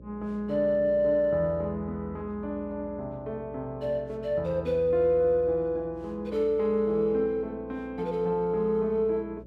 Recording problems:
hum; 60 Hz, harmonics up to 600 Hz, SNR 21 dB

